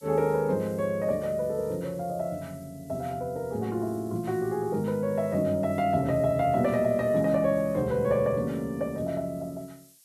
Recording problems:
hiss; SNR 26 dB

